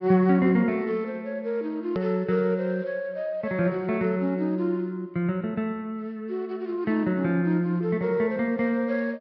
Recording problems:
treble cut off; nothing above 5.5 kHz
edit click; at 2 s

